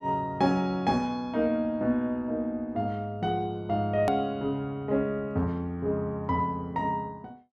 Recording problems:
hard cut with a click; at 4 s

